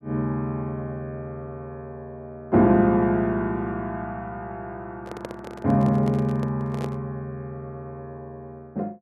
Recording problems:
microphone handling noise; from 5 to 7 s; peak -6 dB vs average level

